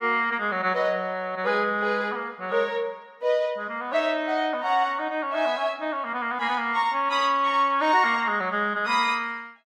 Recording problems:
none

